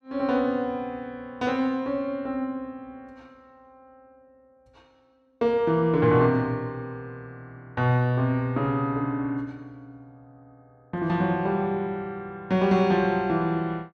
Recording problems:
none

